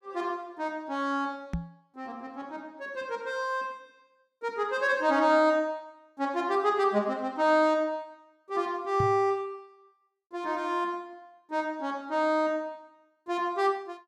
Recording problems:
knock on the microphone; at 1.5 s and at 9 s; peak 0 dB vs average level

